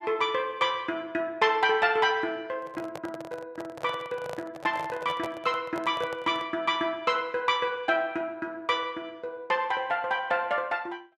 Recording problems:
microphone handling noise; from 2.5 to 6.5 s; peak -5 dB vs average level

